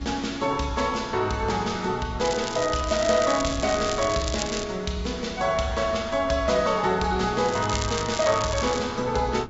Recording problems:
treble cut off; nothing above 7.6 kHz
lossy codec; Vorbis, log-spectral distance 5 dB
wind noise; below 360 Hz, SNR 17 dB
crackling; from 2.5 to 4.5 s and from 7.5 to 9 s; loose cable, SNR 9 dB

